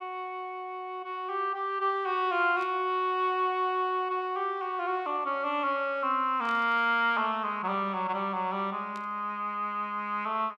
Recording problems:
static burst; at 2.5 s, at 6.5 s and at 9 s; peak -14 dB vs average level

